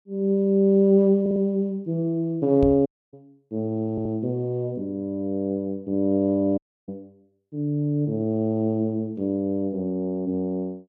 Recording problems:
audio stuttering; at 1 s and at 4 s
microphone thump; at 2.5 s; peak -1 dB vs average level
dropout; at 3 s and at 6.5 s

